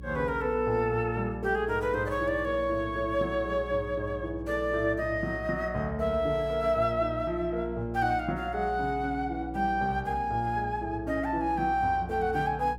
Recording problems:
electrical hum; 60 Hz, harmonics up to 540 Hz, SNR 14 dB

